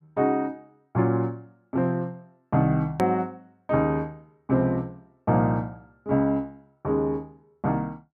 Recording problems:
edit click; at 3 s

